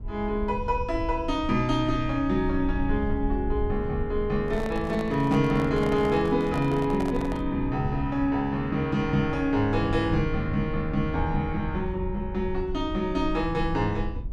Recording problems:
low-frequency rumble; below 72 Hz, SNR 10 dB
microphone handling noise; from 4.5 to 7.5 s; peak -6 dB vs average level

